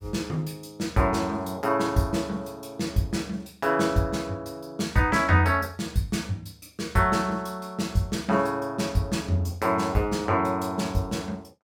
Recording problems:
none

